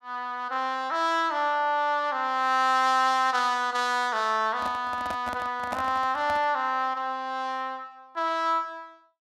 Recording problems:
handling noise; from 4.5 to 6.5 s; peak -3 dB vs average level

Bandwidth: 14.5 kHz